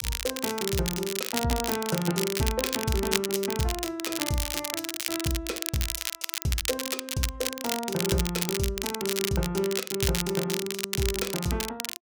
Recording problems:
crackling; vinyl, SNR 1 dB

